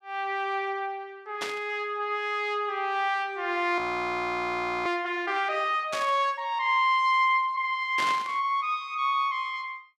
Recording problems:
static burst; at 1.5 s, at 6 s and at 8 s; peak -2 dB vs average level
frozen audio; at 4 s for 1 s

